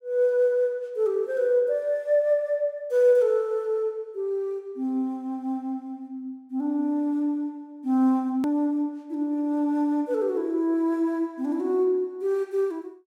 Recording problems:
click at an edit; at 8.5 s

